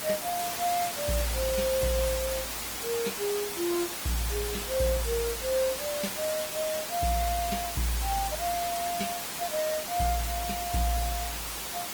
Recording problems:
lossy codec; Opus, log-spectral distance 8 dB, nothing above 19 kHz
background hiss; slope -1 dB per octave, SNR 2 dB

